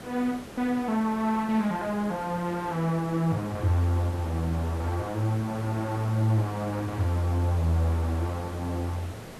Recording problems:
background hiss; slope -6 dB per octave, SNR 14 dB

